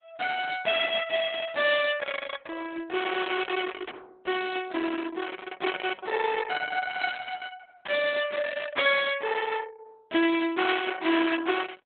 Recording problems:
codec artefacts; Opus, log-spectral distance 5 dB, nothing above 3.6 kHz

